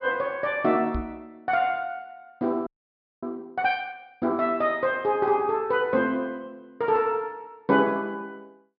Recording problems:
treble missing; nothing above 5.5 kHz
microphone bump; at 1 s; peak -3 dB vs average level
audio freezing; at 2.5 s for 0.5 s

